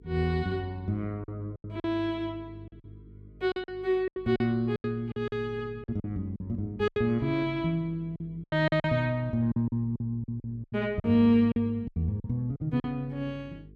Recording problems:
electrical hum; 50 Hz, harmonics up to 450 Hz, SNR 22 dB
lost packets; 12% of the sound replaced, filled with silence

